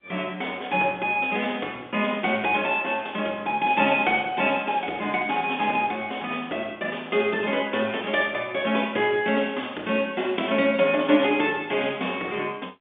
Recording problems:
phone line; 260 Hz to 3.5 kHz, G.711

